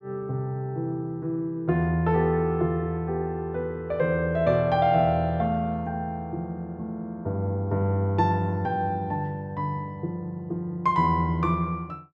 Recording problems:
none

